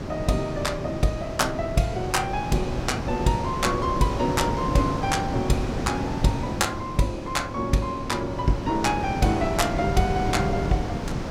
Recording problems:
wind noise; below 510 Hz, SNR 5 dB

